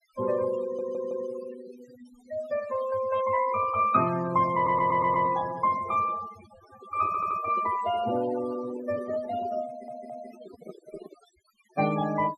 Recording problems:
noise reduction artefacts; signal-to-artefact ratio 13 dB
stutter; 4 times, first at 0.5 s
microphone handling noise; from 6.5 to 11 s; peak -10 dB vs average level

